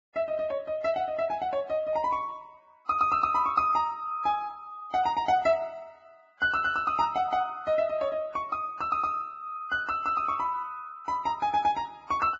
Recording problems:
lossy compression; Vorbis, log-spectral distance 2 dB, nothing above 7.3 kHz

